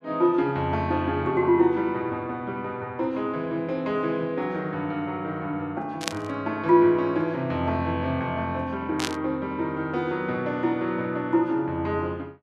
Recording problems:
burst of static; at 6 s and at 9 s; peak +3 dB vs average level

